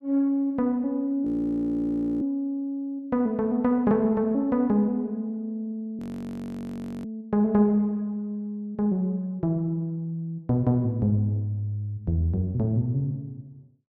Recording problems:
audio freezing; at 1.5 s for 1 s and at 6 s for 1 s

